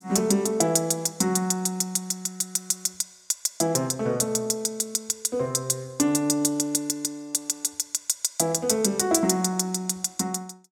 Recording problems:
none

